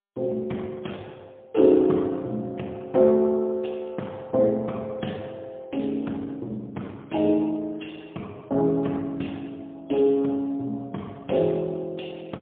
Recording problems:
phone line; 170 Hz to 3.6 kHz, AMR-NB, then MP3

